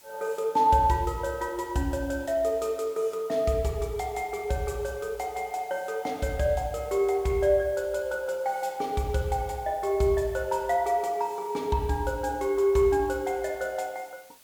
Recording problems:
background hiss; slope 0 dB per octave, SNR 25 dB

